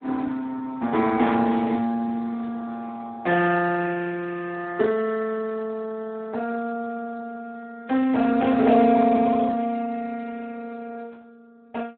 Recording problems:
phone line; 190 Hz to 2.6 kHz, Speex

